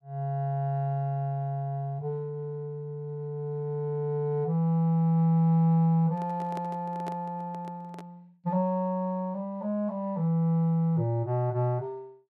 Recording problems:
microphone handling noise; from 6 to 8 s; peak -8 dB vs average level

